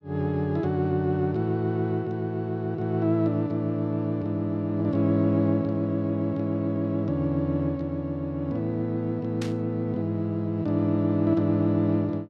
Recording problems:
burst of static; at 9.5 s; peak -7 dB vs average level

